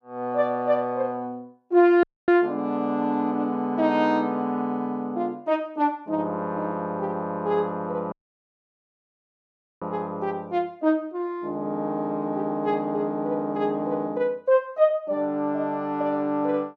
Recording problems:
audio cutting out; at 2 s and at 8 s for 1.5 s

